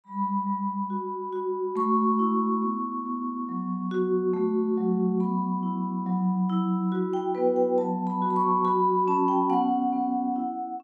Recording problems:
none

